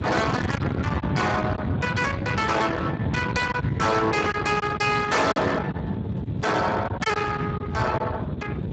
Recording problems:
lossy compression; Speex, log-spectral distance 4 dB, nothing above 7.6 kHz
distortion; soft clipping, signal-to-distortion ratio 8 dB
wind on the microphone; below 630 Hz, SNR 4 dB
packet loss; 4% of the sound replaced, filled with silence

